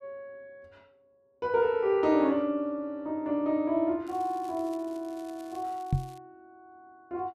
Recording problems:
crackling; from 4 to 6 s; loose cable, SNR 27 dB
knock on the microphone; at 6 s; peak +6 dB vs average level

